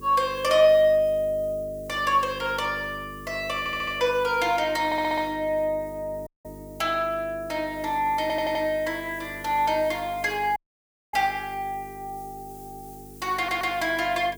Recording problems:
electrical hum; 50 Hz, harmonics up to 450 Hz, SNR 19 dB
background hiss; SNR 24 dB
audio stuttering; 4 times, first at 3.5 s
audio cutting out; at 6.5 s and at 11 s for 0.5 s

